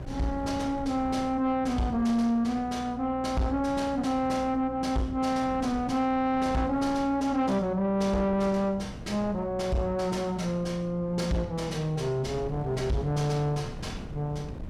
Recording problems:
distortion; soft clipping, signal-to-distortion ratio 10 dB
electrical hum; 60 Hz, harmonics up to 600 Hz, SNR 18 dB
wind noise; below 270 Hz, SNR 16 dB

